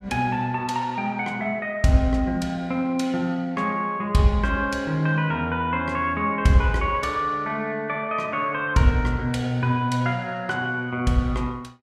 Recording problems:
none

